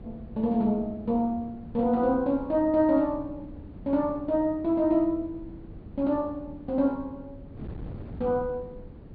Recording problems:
treble cut off; nothing above 4.8 kHz
wind on the microphone; below 260 Hz, SNR 17 dB

